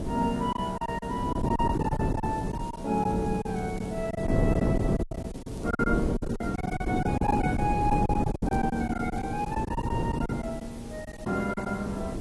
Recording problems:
codec artefacts; AAC, log-spectral distance 3 dB
background hiss; slope -1 dB per octave, SNR 20 dB
wind noise; below 340 Hz, SNR 0 dB
packet loss; 13% of the sound replaced, filled with silence
crackle; from 2.5 to 4 s and from 5.5 to 9.5 s; loose cable, SNR 26 dB

